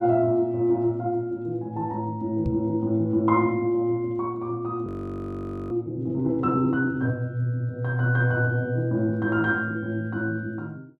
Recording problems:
microphone thump; at 2.5 s; peak 0 dB vs average level
audio freezing; at 5 s for 1 s

